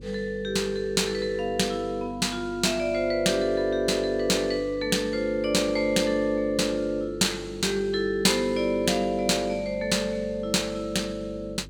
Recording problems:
hum; 50 Hz, harmonics up to 550 Hz, SNR 19 dB

